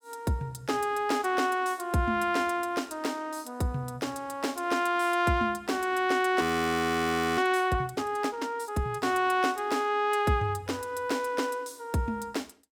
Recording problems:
audio freezing; at 6.5 s for 1 s

